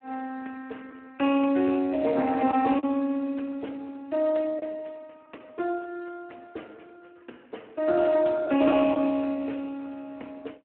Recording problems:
phone line; 220 Hz to 2.8 kHz, Speex
lost packets; 1.4% of the sound replaced, filled with the last packet

